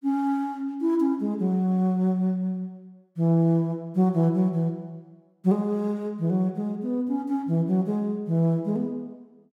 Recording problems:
none

